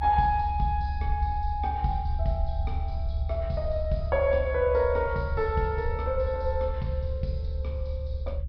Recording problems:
low-pass filter; nothing above 5.5 kHz
low-frequency rumble; below 74 Hz, strongest tone 72 Hz, SNR 3 dB

